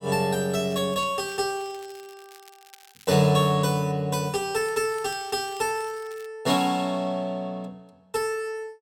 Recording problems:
crackle; at 0.5 s, from 1 to 3 s and from 4.5 to 6.5 s; loose cable, SNR 25 dB

